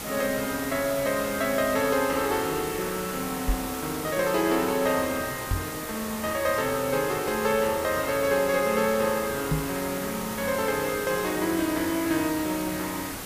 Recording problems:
background hiss; slope -3 dB per octave, SNR 7 dB
microphone thump; at 3.5 s, at 5.5 s and at 9.5 s; peak +3 dB vs average level

